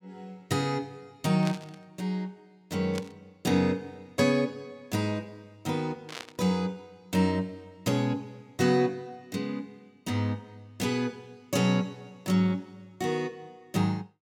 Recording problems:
burst of static; at 1.5 s, at 3 s and at 6 s; peak -4 dB vs average level

